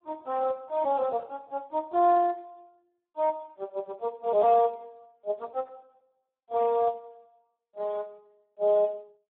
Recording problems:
phone line; 320 Hz to 2.1 kHz, Speex

